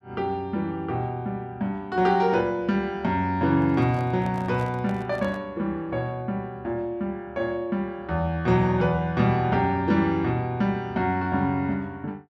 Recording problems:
microphone handling noise; from 3.5 to 5.5 s; peak -11 dB vs average level

